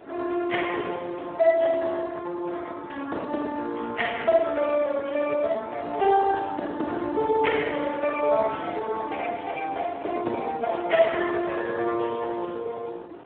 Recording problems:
telephone audio; 260 Hz to 3.5 kHz, Speex
wind noise; below 750 Hz, SNR 20 dB

